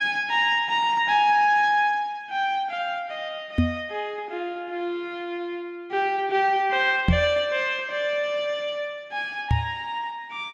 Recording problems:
knock on the microphone; at 3.5 s, at 7 s and at 9.5 s; peak +7 dB vs average level

